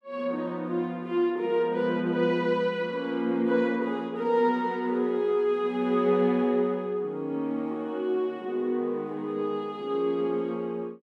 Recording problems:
none

